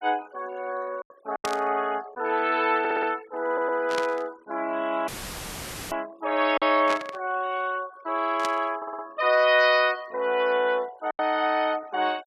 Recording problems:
noise reduction artefacts; signal-to-artefact ratio 23 dB
packet loss; 3% of the sound replaced, filled with silence
burst of static; 4 times, first at 1.5 s; peak -2 dB vs average level
audio stuttering; at 3 s, at 3.5 s and at 9 s
audio cutting out; at 5 s for 1 s; filled with static

